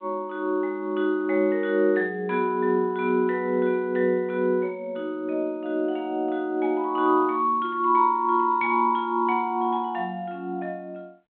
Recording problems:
phone line; 220 Hz to 3.7 kHz, G.726

